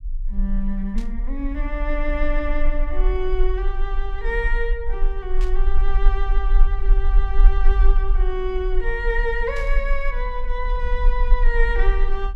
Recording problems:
low-frequency rumble; below 38 Hz, strongest tone 20 Hz, SNR -4 dB
static burst; at 1 s, at 5.5 s and at 9.5 s; peak -9 dB vs average level

